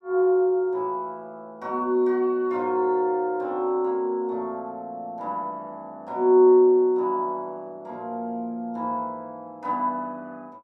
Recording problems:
none

